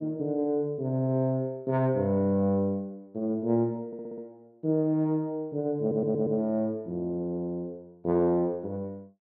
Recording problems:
stutter; at 4 s and at 6 s

